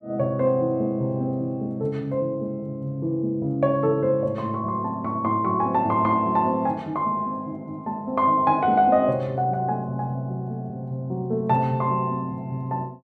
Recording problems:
none

